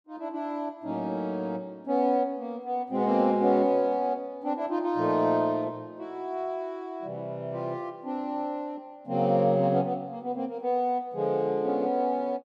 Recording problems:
none

